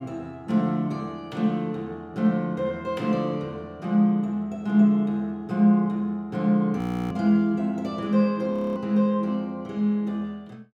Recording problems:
audio freezing; at 7 s and at 8.5 s

